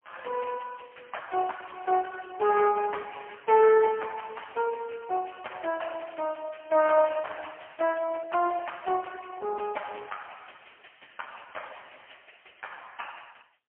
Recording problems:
phone line; 320 Hz to 3.1 kHz, AMR-NB, then MP3

